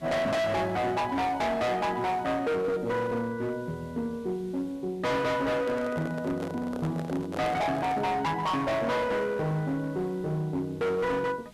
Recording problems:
distorted audio; hard clipping, uneven, signal-to-distortion ratio 6 dB
hiss; SNR 25 dB
handling noise; from 5.5 to 8 s; peak -4 dB vs average level

